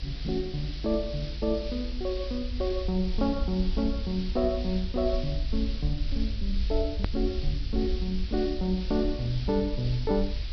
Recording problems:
treble missing; nothing above 5.5 kHz
hiss; SNR 12 dB
low-frequency rumble; below 56 Hz, SNR 4 dB
hard cut with a click; at 7 s

